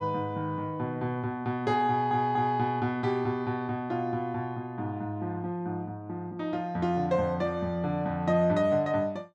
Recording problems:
audio stuttering; at 2 s

